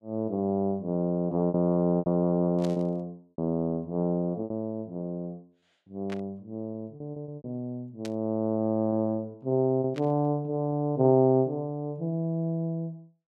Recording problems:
lost packets; 6% of the sound replaced, filled with repeated pitch periods
static burst; 4 times, first at 2.5 s; peak -9 dB vs average level

